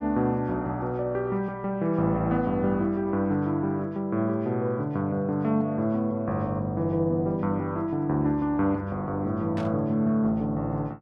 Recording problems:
burst of static; at 9.5 s; peak -11 dB vs average level

